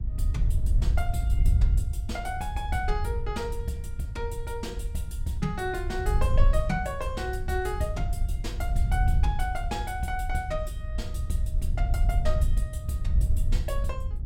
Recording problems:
wind on the microphone; below 74 Hz, SNR -4 dB

